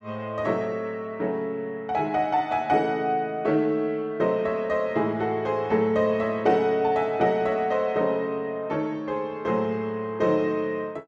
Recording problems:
none

